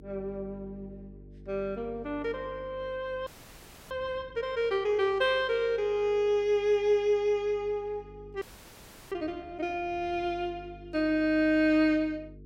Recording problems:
hum; 50 Hz, harmonics up to 450 Hz, SNR 22 dB
frozen audio; at 3.5 s for 0.5 s and at 8.5 s for 0.5 s

